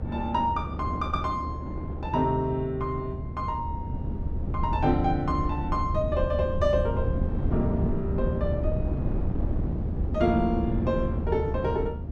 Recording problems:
hum; 60 Hz, harmonics up to 840 Hz, SNR 19 dB
rumble; below 130 Hz, SNR 3 dB
wind noise; below 350 Hz, SNR 9 dB

